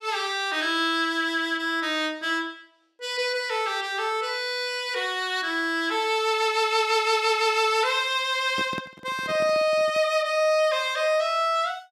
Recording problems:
microphone handling noise; from 8.5 to 10 s; peak -7 dB vs average level

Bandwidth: 14.5 kHz